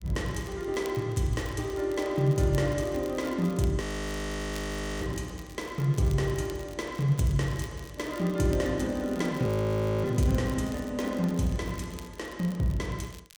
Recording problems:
crackle; vinyl, SNR 21 dB
audio freezing; at 4 s for 1 s and at 9.5 s for 0.5 s

